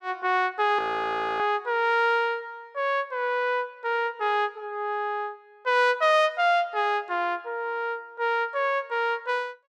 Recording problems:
frozen audio; at 1 s for 0.5 s

